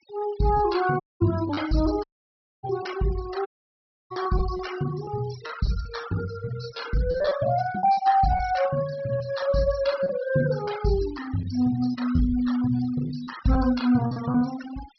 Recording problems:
treble cut off; nothing above 5.5 kHz
noise reduction artefacts; signal-to-artefact ratio 14 dB
packet loss; 7% of the sound replaced, filled with repeated pitch periods
audio cutting out; at 1 s, at 2 s for 0.5 s and at 3.5 s for 0.5 s

